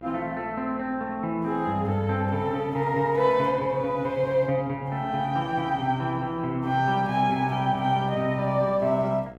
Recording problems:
hum; 60 Hz, harmonics up to 2 kHz, SNR 22 dB

